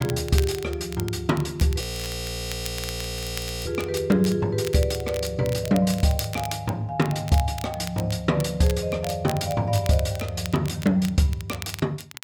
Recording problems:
crackle; vinyl, SNR 14 dB
frozen audio; at 2 s for 2 s

